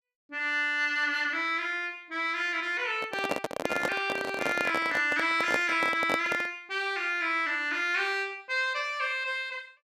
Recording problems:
handling noise; from 3 to 6.5 s; peak +2 dB vs average level

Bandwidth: 14.5 kHz